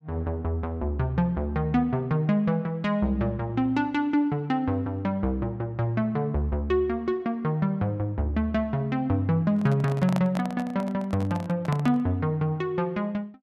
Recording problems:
microphone handling noise; from 9.5 to 12 s; peak -1 dB vs average level

